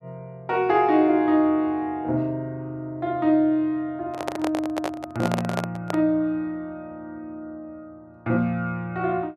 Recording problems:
handling noise; from 4 to 6 s; peak +1 dB vs average level

